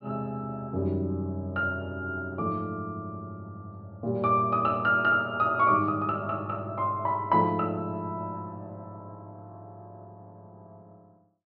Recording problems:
treble cut off; nothing above 5.5 kHz

